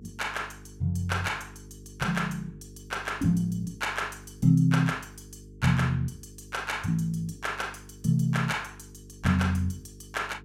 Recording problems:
hum; 50 Hz, harmonics up to 450 Hz, SNR 20 dB

